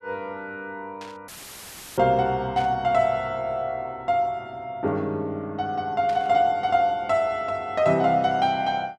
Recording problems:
static burst; at 1 s, at 2.5 s and at 6 s; peak -12 dB vs average level
audio cutting out; at 1.5 s for 0.5 s; filled with static

